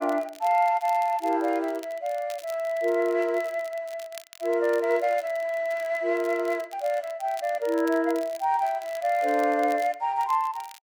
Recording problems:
crackling; vinyl, SNR 22 dB

